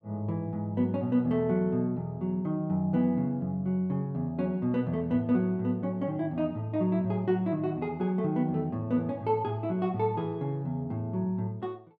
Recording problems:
none

